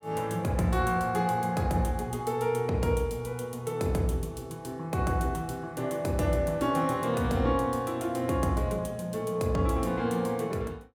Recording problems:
none

